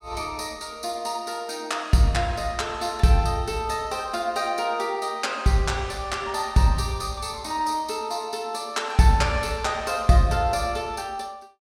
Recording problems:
none

